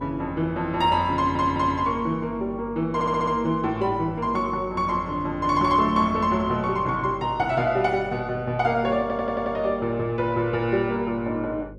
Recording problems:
hum; 50 Hz, harmonics up to 550 Hz, SNR 19 dB
stutter; at 1 s, at 3 s and at 9 s

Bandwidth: 12.5 kHz